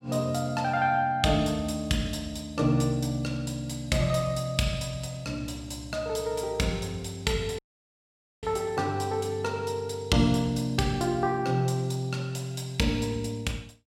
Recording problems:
audio cutting out; at 7.5 s for 1 s

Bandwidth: 16 kHz